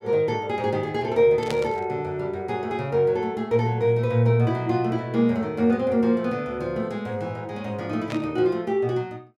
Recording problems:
burst of static; at 1.5 s and at 8 s; peak -5 dB vs average level

